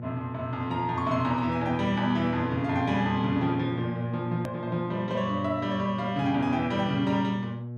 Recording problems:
electrical hum; 60 Hz, harmonics up to 600 Hz, SNR 8 dB
edit click; at 4.5 s

